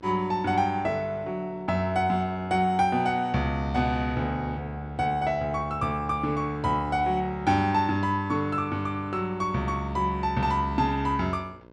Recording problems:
electrical hum; 60 Hz, harmonics up to 2 kHz, SNR 25 dB

